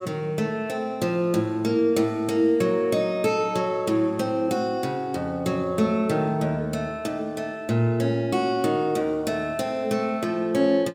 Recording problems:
none

